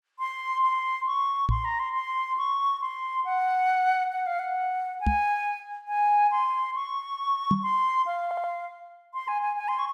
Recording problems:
microphone thump; at 1.5 s, at 5 s and at 7.5 s; peak +5 dB vs average level
stutter; at 8.5 s

